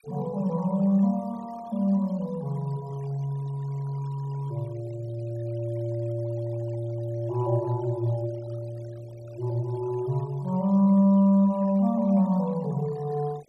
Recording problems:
denoising artefacts; signal-to-artefact ratio 25 dB

